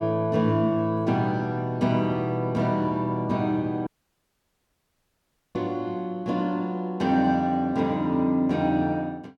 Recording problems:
audio cutting out; at 4 s for 1.5 s

